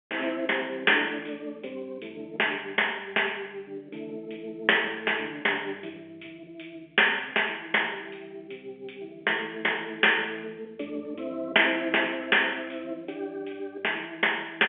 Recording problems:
telephone audio; 340 Hz to 3.4 kHz, G.711

